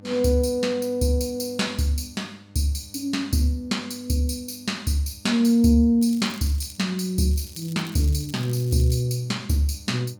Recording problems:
hum; 50 Hz, harmonics up to 1.2 kHz, SNR 26 dB
crackling; at 6 s and from 7.5 to 9 s; loose cable, SNR 21 dB

